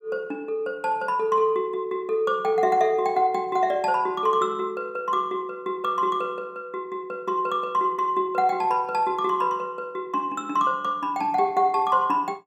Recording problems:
none

